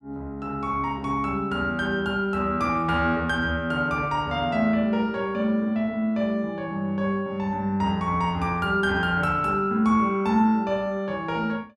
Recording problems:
none

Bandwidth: 14 kHz